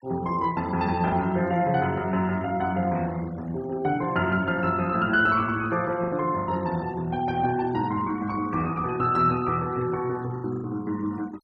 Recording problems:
noise reduction artefacts; signal-to-artefact ratio 22 dB
lost packets; 3% of the sound replaced, filled with the last packet

